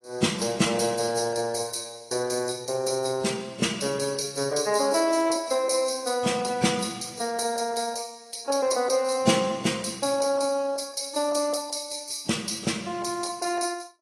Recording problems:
lossy codec; AAC, log-spectral distance 7 dB, nothing above 11 kHz

